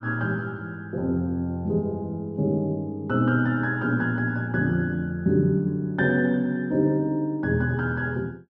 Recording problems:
none

